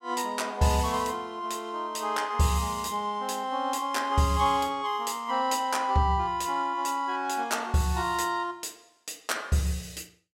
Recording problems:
none

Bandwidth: 16 kHz